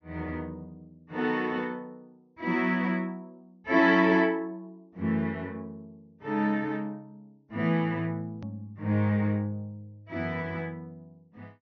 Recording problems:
treble missing; nothing above 6.4 kHz
hard cut with a click; at 8.5 s

